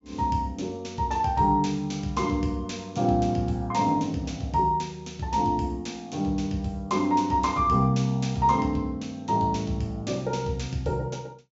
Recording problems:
treble cut off; nothing above 8 kHz

